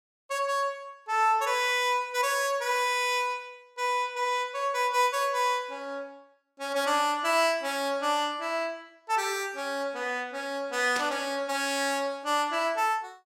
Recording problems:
burst of static; at 11 s; peak -3 dB vs average level

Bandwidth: 16.5 kHz